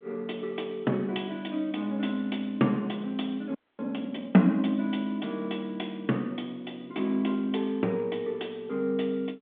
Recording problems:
phone line; 190 Hz to 3.6 kHz, G.726
frozen audio; at 3.5 s

